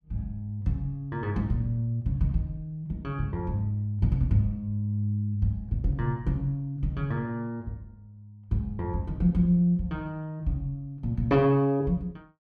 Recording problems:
none

